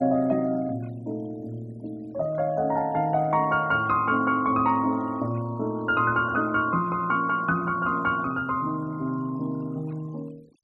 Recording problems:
denoising artefacts; signal-to-artefact ratio 27 dB

